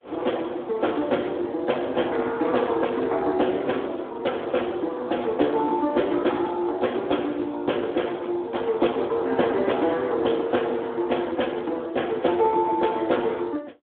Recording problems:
telephone audio; 260 Hz to 3.3 kHz, Speex

